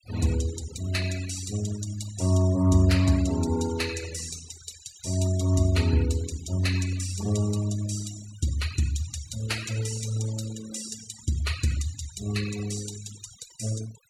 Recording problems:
noise reduction artefacts; signal-to-artefact ratio 13 dB

